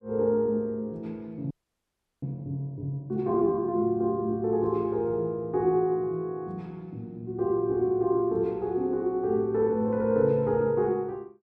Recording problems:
frozen audio; at 1.5 s for 0.5 s

